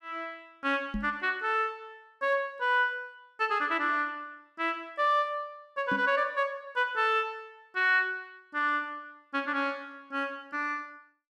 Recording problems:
microphone bump; at 1 s and at 6 s; peak -1 dB vs average level

